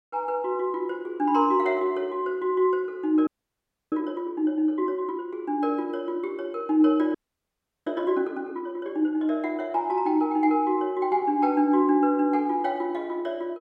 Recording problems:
audio freezing; at 3.5 s for 0.5 s and at 7 s for 0.5 s

